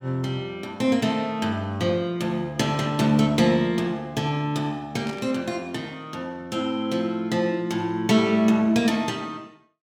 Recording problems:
static burst; at 5 s; peak -12 dB vs average level

